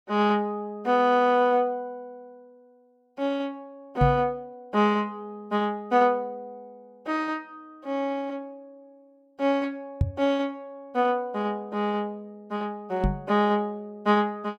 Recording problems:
microphone thump; at 4 s, at 10 s and at 13 s; peak +6 dB vs average level

